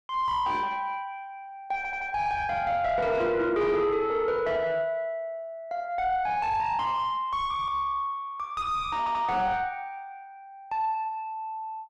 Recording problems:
distorted audio; soft clipping, signal-to-distortion ratio 10 dB
audio stuttering; at 2 s and at 9 s

